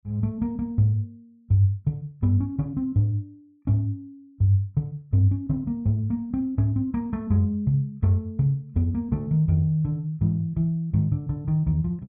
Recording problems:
none

